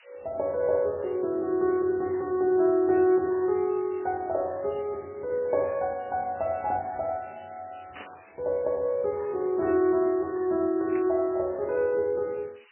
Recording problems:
codec artefacts; MP3, log-spectral distance 14 dB, nothing above 2.7 kHz
hiss; SNR 27 dB
static burst; at 8 s and at 11 s; peak -12 dB vs average level

